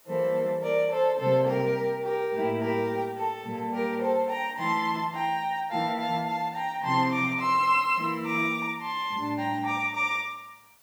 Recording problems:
hiss; SNR 29 dB

